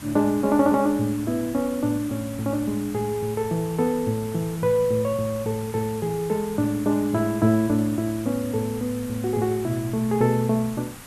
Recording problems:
background hiss; slope -2 dB per octave, SNR 16 dB

